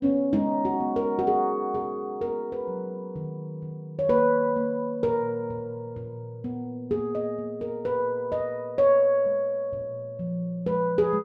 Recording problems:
none

